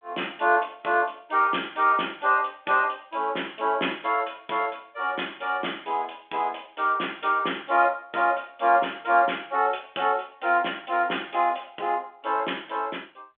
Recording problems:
telephone audio; 260 Hz to 3.5 kHz, G.726

